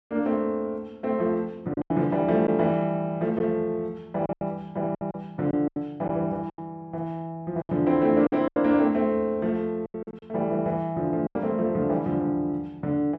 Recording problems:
lost packets; 7% of the sound replaced, filled with silence

